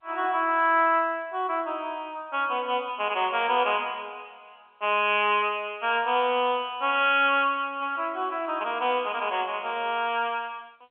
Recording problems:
phone line; 260 Hz to 3.4 kHz, G.711

